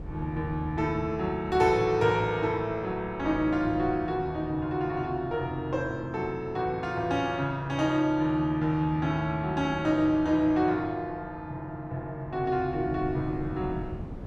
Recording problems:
wind noise; below 220 Hz, SNR 16 dB

